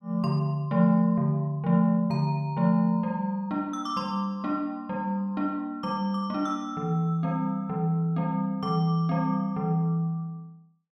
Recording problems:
none

